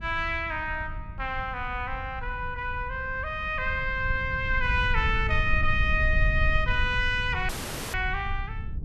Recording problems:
rumble; below 76 Hz, SNR 6 dB
audio cutting out; at 7.5 s

